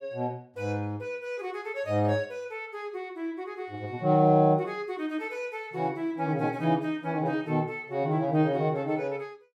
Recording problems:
none

